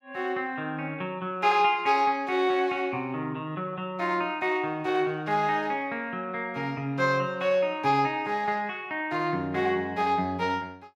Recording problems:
none

